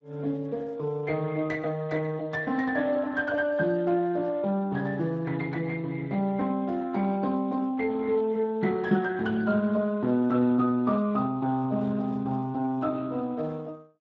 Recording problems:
codec artefacts; Speex, log-spectral distance 2 dB

